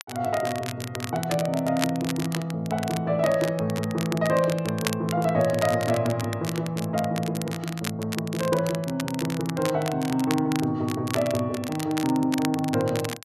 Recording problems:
crackling; vinyl, SNR 10 dB

